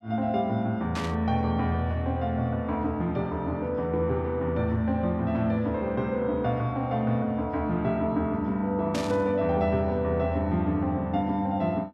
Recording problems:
static burst; at 1 s and at 9 s; peak -5 dB vs average level

